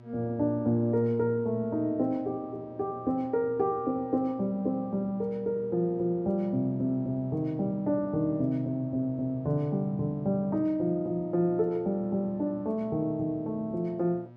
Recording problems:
hum; 60 Hz, harmonics up to 1.3 kHz, SNR 21 dB

